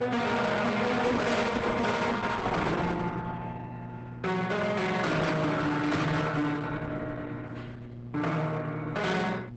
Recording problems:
lossy codec; Opus, log-spectral distance 4 dB, nothing above 8 kHz
distortion; hard clipping, signal-to-distortion ratio 7 dB
hum; 60 Hz, harmonics up to 480 Hz, SNR 14 dB

